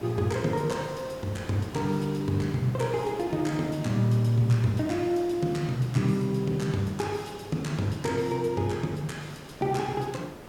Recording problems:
hiss; slope -7 dB per octave, SNR 16 dB

